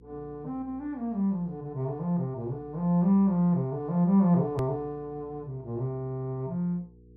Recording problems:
hum; 60 Hz, harmonics up to 480 Hz, SNR 26 dB
click at an edit; at 4.5 s

